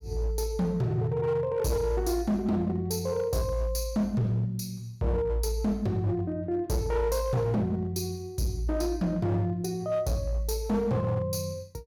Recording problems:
distorted audio; hard clipping, signal-to-distortion ratio 11 dB

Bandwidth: 18 kHz